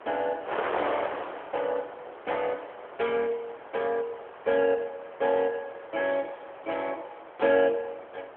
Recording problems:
phone line; 340 Hz to 3.3 kHz, AMR-NB
wind noise; below 1.3 kHz, SNR 9 dB

